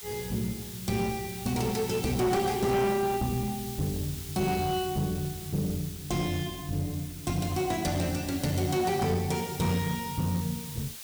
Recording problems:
distorted audio; hard clipping, uneven, signal-to-distortion ratio 11 dB
background hiss; slope +3 dB per octave, SNR 11 dB

